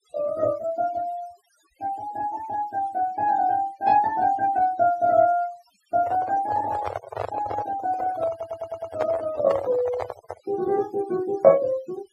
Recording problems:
noise reduction artefacts; signal-to-artefact ratio 19 dB
handling noise; from 6 to 10 s; peak 0 dB vs average level
audio stuttering; at 8.5 s

